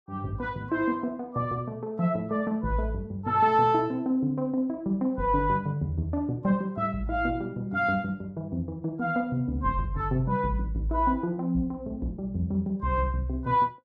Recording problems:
none

